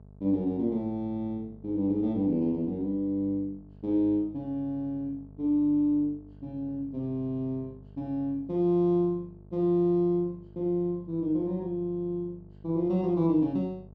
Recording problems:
hum; 50 Hz, harmonics up to 900 Hz, SNR 22 dB

